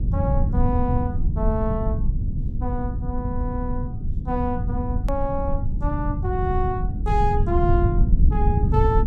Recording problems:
rumble; below 110 Hz, SNR -3 dB
click at an edit; at 5 s

